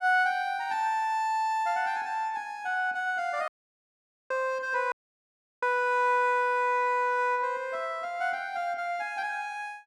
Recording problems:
audio cutting out; at 3.5 s for 1 s and at 5 s for 0.5 s

